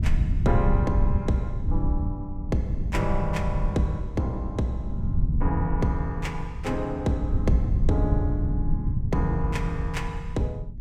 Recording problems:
rumble; below 110 Hz, SNR 0 dB

